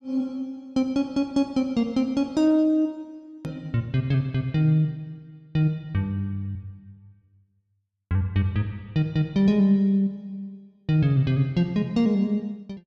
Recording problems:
click at an edit; at 3.5 s

